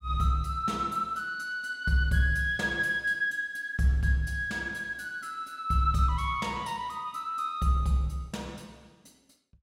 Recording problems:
none

